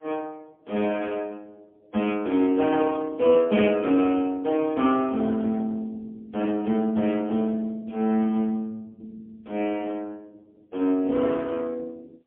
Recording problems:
telephone audio; 240 Hz to 3.3 kHz, AMR-NB, then MP3

